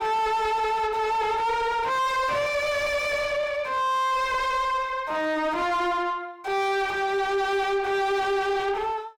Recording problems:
distortion; soft clipping, signal-to-distortion ratio 7 dB

